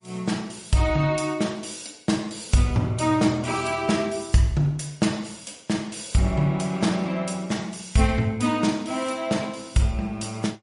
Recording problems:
codec artefacts; MP3, log-spectral distance 5 dB, nothing above 10.4 kHz

